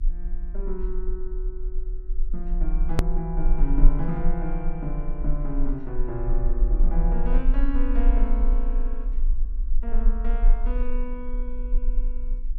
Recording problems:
electrical hum; 60 Hz, harmonics up to 360 Hz, SNR 21 dB
low-frequency rumble; below 34 Hz, strongest tone 22 Hz, SNR -5 dB
hard cut with a click; at 3 s

